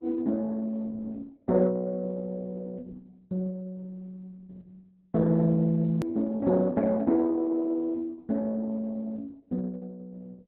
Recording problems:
lossy compression; Opus, log-spectral distance 2 dB, nothing above 13.1 kHz
click at an edit; at 6 s

